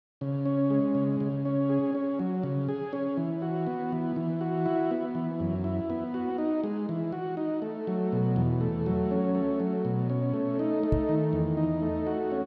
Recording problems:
knock on the microphone; at 11 s; peak +5 dB vs average level

